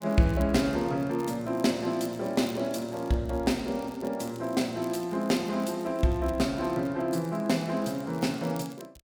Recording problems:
crackle; vinyl, SNR 24 dB

